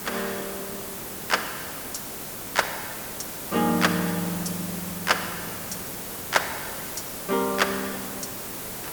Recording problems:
background hiss; slope -4 dB per octave, SNR 4 dB

